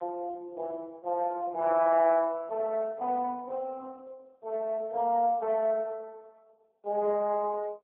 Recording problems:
telephone audio; 260 Hz to 2.5 kHz, AMR-NB

